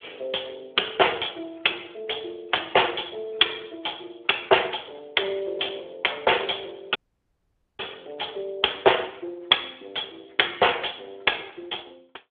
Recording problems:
telephone audio; 340 Hz to 3.5 kHz, Speex
dropout; at 7 s for 1 s

